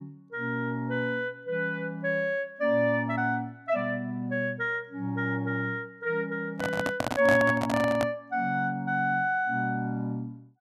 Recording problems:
handling noise; from 6.5 to 8 s; peak +3 dB vs average level

